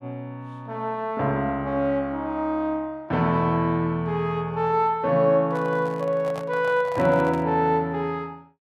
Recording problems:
microphone handling noise; from 5.5 to 7.5 s; peak -8 dB vs average level

